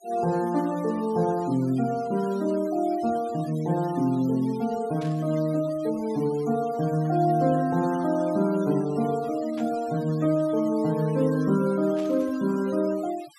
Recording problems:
denoising artefacts; signal-to-artefact ratio 21 dB
burst of static; at 5 s, at 9.5 s and at 12 s; peak -15 dB vs average level

